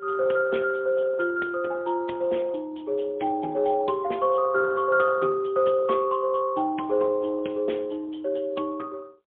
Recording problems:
telephone audio; 240 Hz to 3.4 kHz, AMR-NB, then MP3

